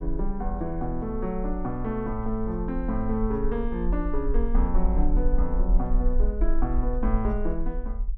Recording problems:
low-frequency rumble; below 44 Hz, strongest tone 22 Hz, SNR 0 dB

